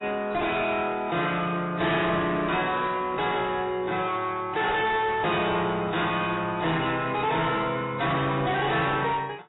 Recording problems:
codec artefacts; AAC, log-spectral distance 4 dB, nothing above 3.8 kHz
distorted audio; soft clipping, signal-to-distortion ratio 6 dB

